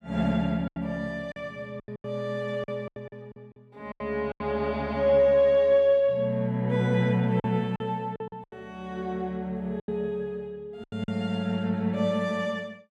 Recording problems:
packet loss; 9% of the sound replaced, filled with silence

